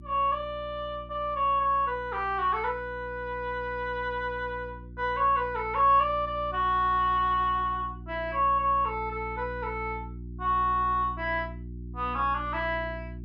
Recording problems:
hum; 60 Hz, harmonics up to 360 Hz, SNR 15 dB

